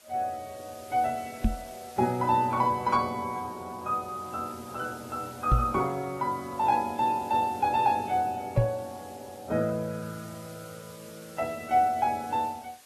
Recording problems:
lossy compression; AAC, log-spectral distance 6 dB, nothing above 13.1 kHz
hiss; slope 0 dB per octave, SNR 21 dB
microphone bump; at 1.5 s, at 5.5 s and at 8.5 s; peak +8 dB vs average level

